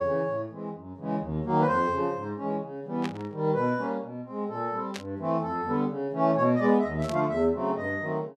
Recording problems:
burst of static; at 3 s, at 5 s and at 7 s; peak -4 dB vs average level

